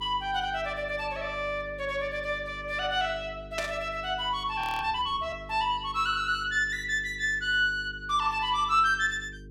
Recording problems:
electrical hum; 50 Hz, harmonics up to 450 Hz, SNR 18 dB
burst of static; at 3.5 s; peak -2 dB vs average level
frozen audio; at 4.5 s

